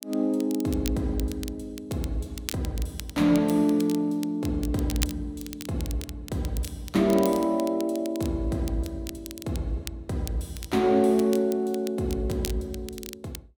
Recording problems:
crackling; vinyl, SNR 15 dB

